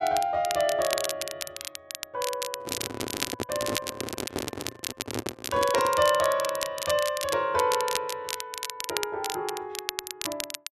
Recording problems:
crackle; vinyl, SNR 6 dB
handling noise; from 2.5 to 6 s; peak +1 dB vs average level

